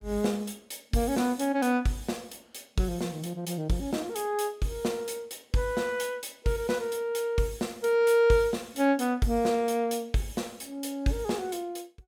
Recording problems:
none

